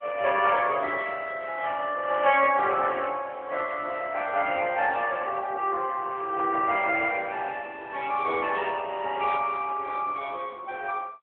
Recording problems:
phone line; 340 Hz to 3.3 kHz, AMR-NB

